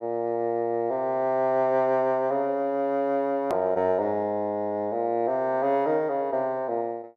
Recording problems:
click at an edit; at 3.5 s

